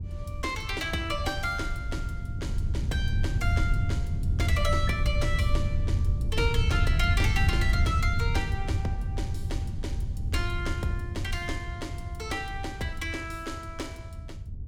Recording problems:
low-frequency rumble; below 100 Hz, SNR -3 dB

